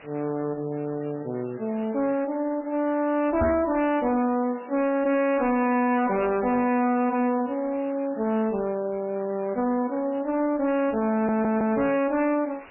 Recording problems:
lossy compression; MP3, log-spectral distance 8 dB, nothing above 2.5 kHz
distorted audio; hard clipping, uneven, signal-to-distortion ratio 10 dB
background hiss; SNR 22 dB
microphone bump; at 3.5 s; peak +3 dB vs average level
stutter; at 11 s

